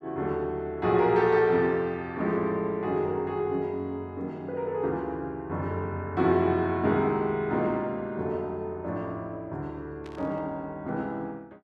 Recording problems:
static burst; at 10 s; peak -17 dB vs average level

